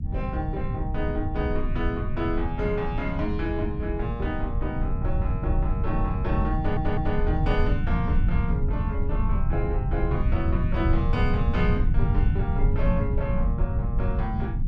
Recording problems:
rumble; below 100 Hz, SNR -3 dB
stutter; at 6.5 s

